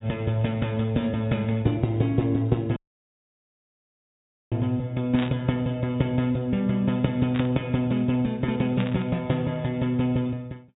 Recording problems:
treble missing; nothing above 4 kHz
dropout; at 3 s for 2 s
burst of static; at 5 s, at 7.5 s and at 9 s; peak -5 dB vs average level

